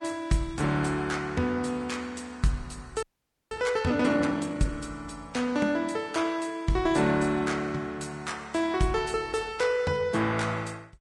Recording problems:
lossy codec; Vorbis, log-spectral distance 3 dB
frozen audio; at 3 s

